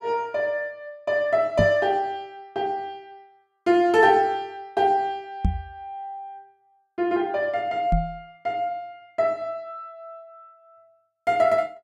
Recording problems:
microphone bump; at 1.5 s, at 5.5 s and at 8 s; peak +5 dB vs average level

